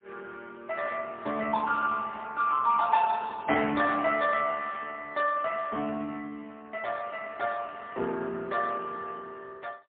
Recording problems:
telephone audio; 190 Hz to 2.8 kHz, AMR-NB, then MP3

